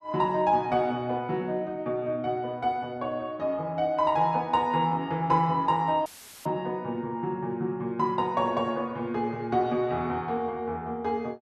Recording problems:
dropout; at 6 s; filled with static

